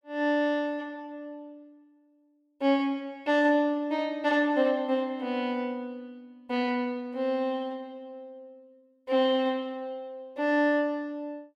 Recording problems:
none

